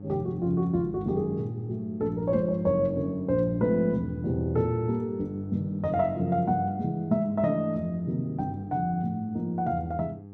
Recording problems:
hum; 50 Hz, harmonics up to 800 Hz, SNR 17 dB

